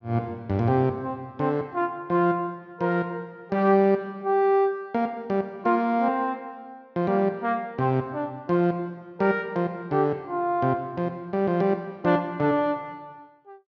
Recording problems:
treble missing; nothing above 6.9 kHz

